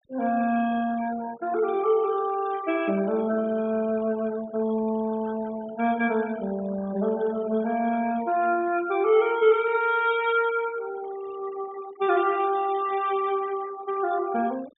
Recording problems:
treble cut off; nothing above 4 kHz
denoising artefacts; signal-to-artefact ratio 18 dB

